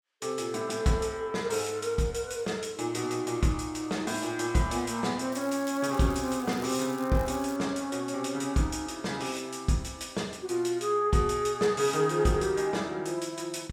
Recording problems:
crackling; from 5.5 to 7.5 s; loose cable, SNR 19 dB

